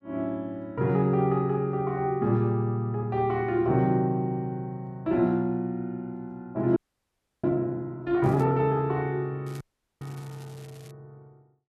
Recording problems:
audio freezing; at 7 s for 0.5 s and at 9.5 s
crackling; at 8 s and from 9.5 to 11 s; loose cable, SNR 28 dB

